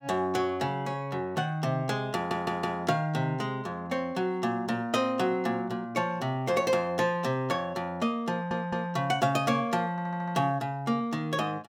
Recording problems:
audio stuttering; at 2 s, at 8.5 s and at 10 s

